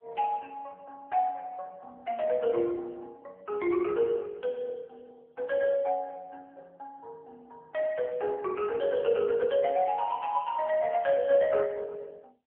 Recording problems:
phone line; 280 Hz to 2.6 kHz, AMR-NB

